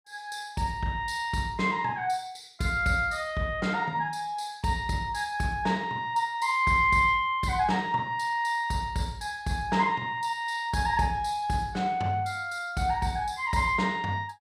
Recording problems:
none

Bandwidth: 15.5 kHz